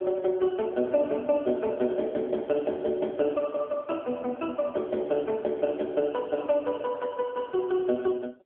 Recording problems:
phone line; 240 Hz to 2.2 kHz, AMR-NB

